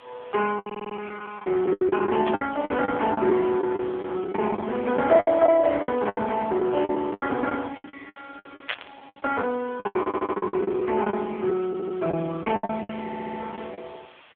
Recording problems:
telephone audio; 280 Hz to 3.4 kHz, AMR-NB
hiss; SNR 27 dB
packet loss; 16% of the sound replaced, filled with the last packet
stutter; 4 times, first at 0.5 s
static burst; at 2.5 s and at 8.5 s; peak +1 dB vs average level

